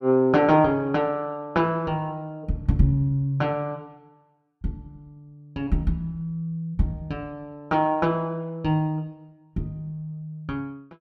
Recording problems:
none

